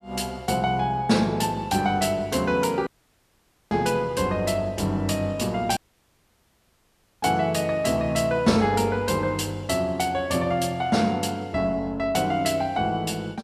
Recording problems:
dropout; at 3 s for 1 s and at 6 s for 1.5 s

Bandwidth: 14.5 kHz